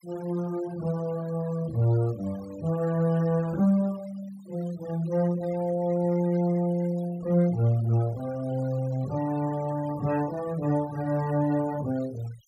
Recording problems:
denoising artefacts; signal-to-artefact ratio 21 dB

